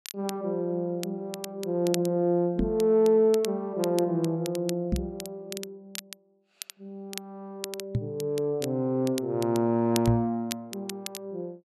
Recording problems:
crackle; vinyl, SNR 14 dB
microphone thump; 4 times, first at 2.5 s; peak +4 dB vs average level

